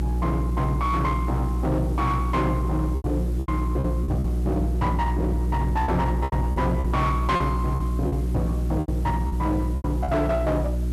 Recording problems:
distorted audio; hard clipping, signal-to-distortion ratio 11 dB
hum; 60 Hz, harmonics up to 360 Hz, SNR 0 dB
background hiss; SNR 24 dB
packet loss; 8% of the sound replaced, filled with repeated pitch periods

